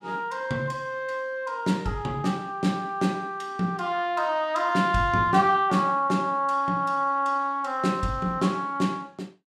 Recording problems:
none

